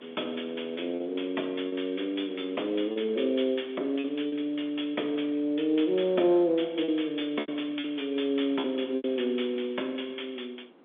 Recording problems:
telephone audio; 220 Hz to 3.6 kHz, G.711
wind on the microphone; below 650 Hz, SNR 25 dB
packet loss; 5% of the sound replaced, filled with repeated pitch periods

